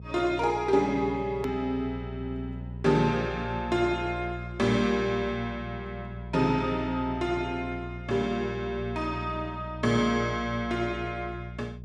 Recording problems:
hum; 60 Hz, harmonics up to 420 Hz, SNR 10 dB
hard cut with a click; at 1.5 s

